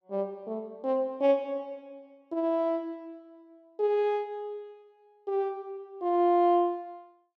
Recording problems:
none

